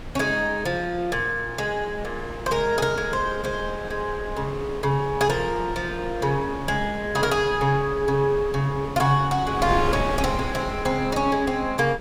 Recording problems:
wind on the microphone; below 570 Hz, SNR 11 dB

